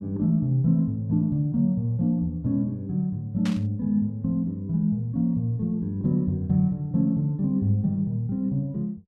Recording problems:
static burst; at 3.5 s; peak -7 dB vs average level

